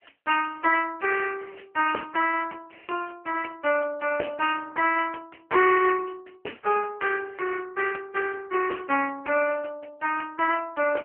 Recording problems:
telephone audio; 300 Hz to 3 kHz, AMR-NB

